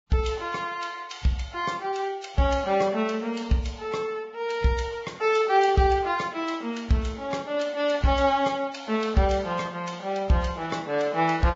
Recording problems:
codec artefacts; Vorbis, log-spectral distance 3 dB, nothing above 7.3 kHz

